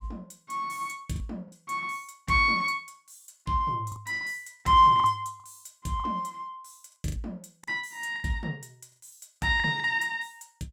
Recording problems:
lost packets; 7% of the sound replaced, filled with the last packet

